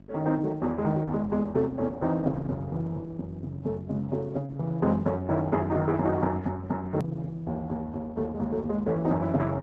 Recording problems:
lossy compression; Opus, log-spectral distance 2 dB, nothing above 13.1 kHz
hum; 50 Hz, harmonics up to 1 kHz, SNR 25 dB
hard cut with a click; at 7 s

